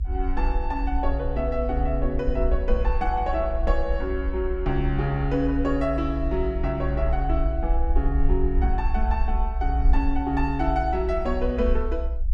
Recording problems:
rumble; below 58 Hz, SNR 1 dB

